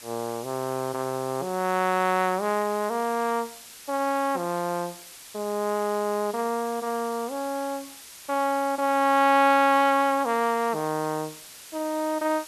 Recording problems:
hiss; slope +2 dB per octave, SNR 17 dB

